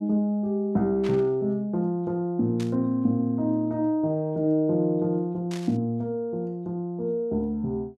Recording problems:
burst of static; at 1 s, at 2.5 s and at 5.5 s; peak -9 dB vs average level

